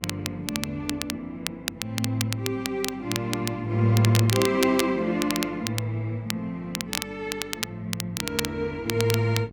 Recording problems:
electrical hum; 50 Hz, harmonics up to 800 Hz, SNR 20 dB
crackling; vinyl, SNR 5 dB

